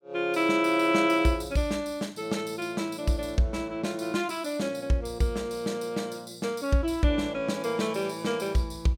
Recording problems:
none

